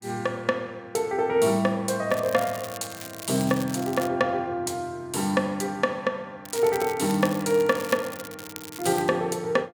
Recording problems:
crackle; from 2 to 4 s and from 6.5 to 9 s; loose cable, SNR 13 dB

